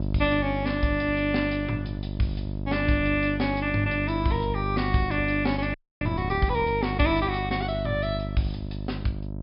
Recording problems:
low-pass filter; nothing above 5.5 kHz
electrical hum; 50 Hz, harmonics up to 700 Hz, SNR 5 dB
frozen audio; at 5.5 s

